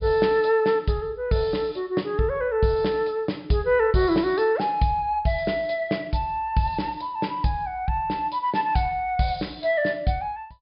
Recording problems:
treble missing; nothing above 5.1 kHz

